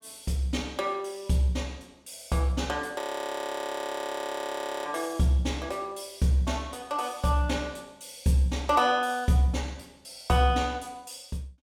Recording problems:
frozen audio; at 3 s for 2 s

